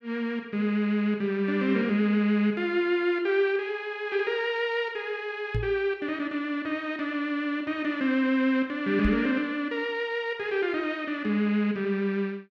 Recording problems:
microphone thump; at 5.5 s and at 9 s; peak +1 dB vs average level

